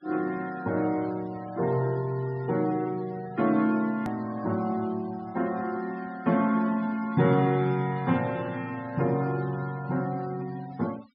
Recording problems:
low-pass filter; nothing above 5.5 kHz
denoising artefacts; signal-to-artefact ratio 22 dB
edit click; at 4 s

